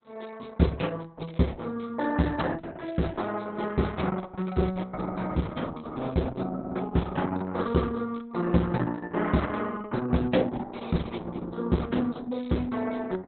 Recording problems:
codec artefacts; Opus, log-spectral distance 5 dB, nothing above 4 kHz

